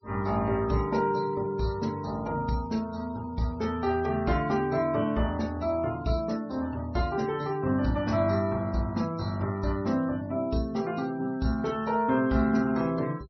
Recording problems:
treble missing; nothing above 5.9 kHz
noise reduction artefacts; signal-to-artefact ratio 24 dB

